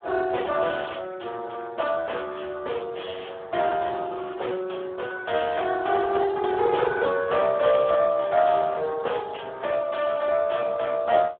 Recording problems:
telephone audio; 320 Hz to 2.8 kHz, Speex

